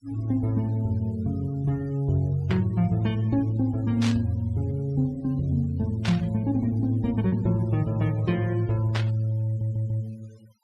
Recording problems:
denoising artefacts; signal-to-artefact ratio 26 dB
lost packets; 0.4% of the sound replaced, filled with repeated pitch periods
static burst; 4 times, first at 2.5 s; peak -2 dB vs average level
audio stuttering; at 9.5 s

